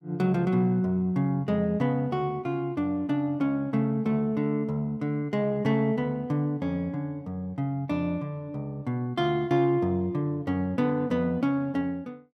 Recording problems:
none

